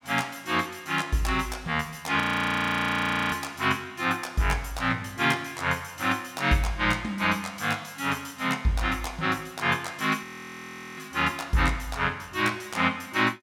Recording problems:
frozen audio; at 2 s for 1 s and at 10 s for 0.5 s

